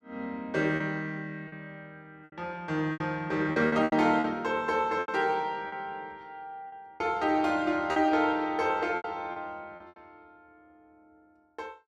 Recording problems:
lost packets; 9% of the sound replaced, filled with repeated pitch periods

